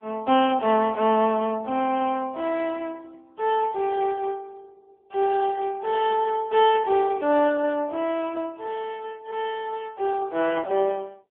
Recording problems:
phone line; 240 Hz to 3.4 kHz, AMR-NB

